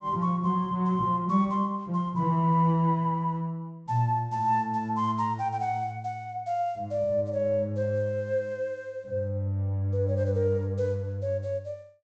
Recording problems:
treble missing; nothing above 8 kHz

